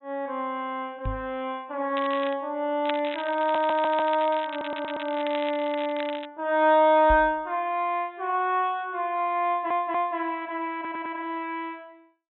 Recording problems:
low-pass filter; nothing above 3.9 kHz
knock on the microphone; at 1 s and at 7 s; peak -2 dB vs average level
crackle; at 2 s and from 3 to 6.5 s; loose cable, SNR 14 dB
stutter; 4 times, first at 3.5 s

